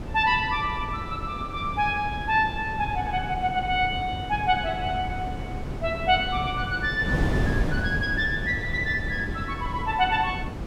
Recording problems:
wind noise; below 300 Hz, SNR 6 dB

